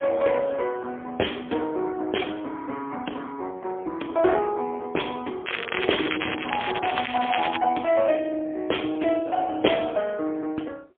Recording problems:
telephone audio; 240 Hz to 3.4 kHz, AMR-NB, then MP3
crackling; from 5.5 to 7.5 s; loose cable, SNR 6 dB

